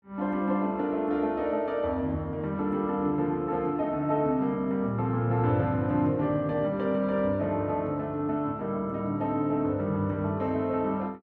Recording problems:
none

